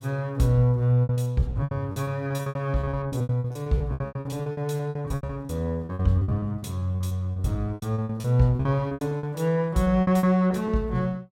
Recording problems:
lost packets; 23% of the sound replaced, filled with repeated pitch periods

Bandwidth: 16 kHz